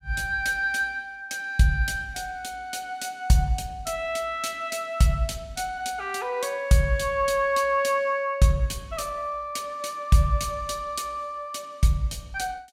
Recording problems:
none

